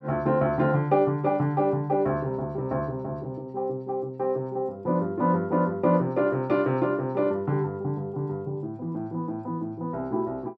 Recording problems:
none

